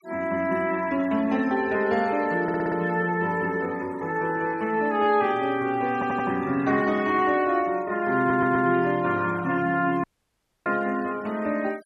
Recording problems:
denoising artefacts; signal-to-artefact ratio 23 dB
audio stuttering; at 2.5 s, at 6 s and at 8 s
audio cutting out; at 10 s for 0.5 s

